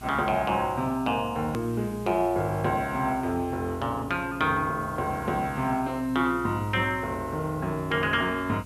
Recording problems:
electrical hum; 60 Hz, harmonics up to 900 Hz, SNR 18 dB
hiss; SNR 24 dB
edit click; at 1.5 s

